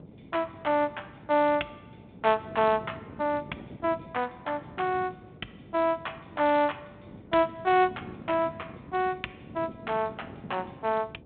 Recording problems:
telephone audio; 220 Hz to 3.5 kHz, G.726
wind on the microphone; below 360 Hz, SNR 18 dB

